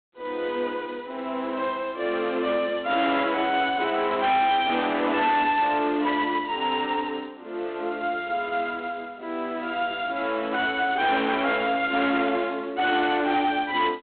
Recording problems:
telephone audio; 240 Hz to 3.9 kHz, G.726
distortion; hard clipping, signal-to-distortion ratio 11 dB

